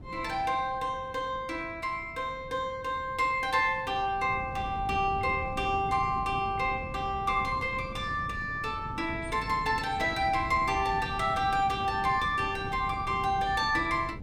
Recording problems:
wind noise; below 220 Hz, SNR 13 dB

